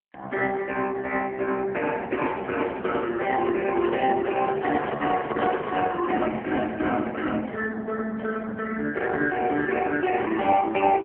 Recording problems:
phone line; 280 Hz to 3.5 kHz, AMR-NB
handling noise; from 2 to 6 s; peak +1 dB vs average level

